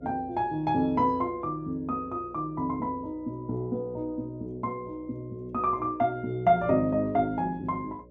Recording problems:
hum; 60 Hz, harmonics up to 600 Hz, SNR 24 dB

